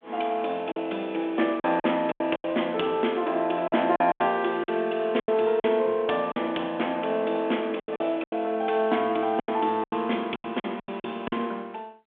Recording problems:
telephone audio; 240 Hz to 3.5 kHz, G.726
lost packets; 11% of the sound replaced, filled with silence

